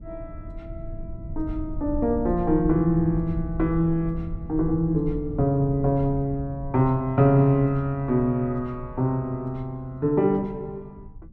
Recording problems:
rumble; below 100 Hz, SNR 13 dB

